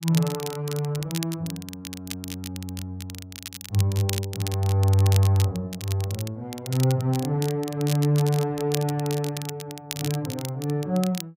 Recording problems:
crackling; vinyl, SNR 11 dB

